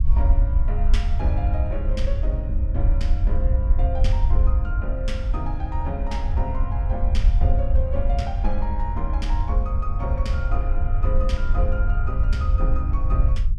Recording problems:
rumble; below 66 Hz, SNR -8 dB

